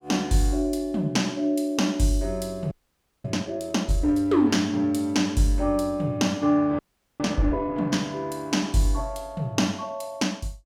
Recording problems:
frozen audio; at 2.5 s for 0.5 s and at 7 s

